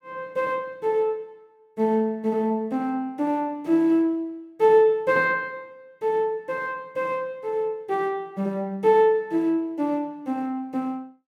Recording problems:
none

